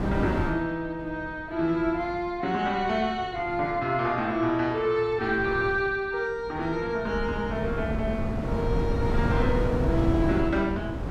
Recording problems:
wind on the microphone; below 280 Hz, SNR 3 dB

